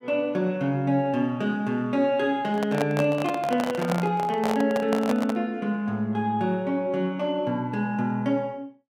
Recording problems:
microphone handling noise; from 2.5 to 5.5 s; peak +1 dB vs average level

